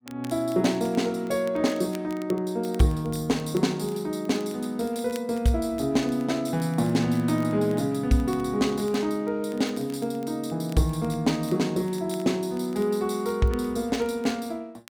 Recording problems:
crackle; vinyl, SNR 25 dB

